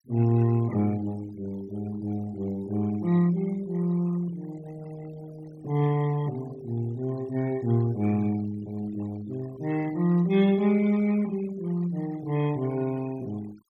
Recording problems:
noise reduction artefacts; signal-to-artefact ratio 21 dB

